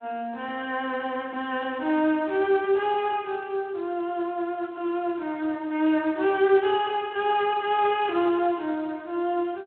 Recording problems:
phone line; 220 Hz to 3.7 kHz, Speex

